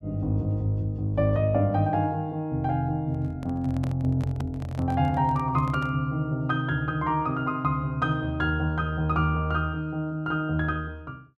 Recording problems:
handling noise; from 3 to 6 s; peak -7 dB vs average level

